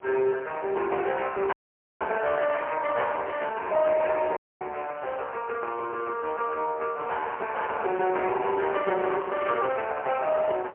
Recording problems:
telephone audio; 320 Hz to 3.1 kHz, AMR-NB, then MP3
wind noise; below 590 Hz, SNR 23 dB
dropout; at 1.5 s and at 4.5 s

